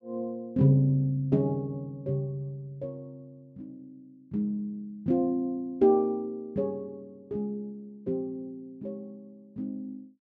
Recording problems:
none

